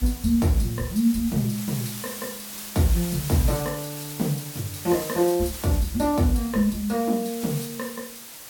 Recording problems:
background hiss; slope 0 dB per octave, SNR 10 dB

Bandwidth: 17 kHz